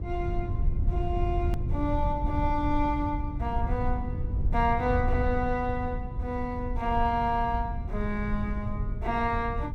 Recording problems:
electrical hum; 50 Hz, harmonics up to 900 Hz, SNR 20 dB
low-frequency rumble; below 94 Hz, SNR 2 dB
hard cut with a click; at 1.5 s

